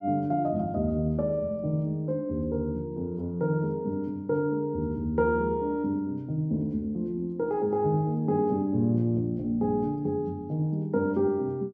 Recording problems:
none

